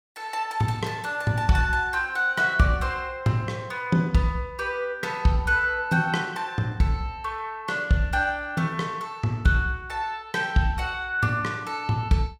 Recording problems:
none

